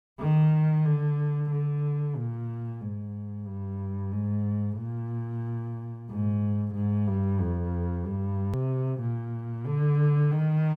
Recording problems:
hard cut with a click; at 8.5 s

